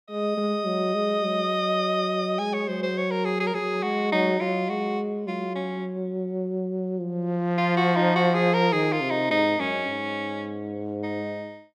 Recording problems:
none

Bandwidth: 15.5 kHz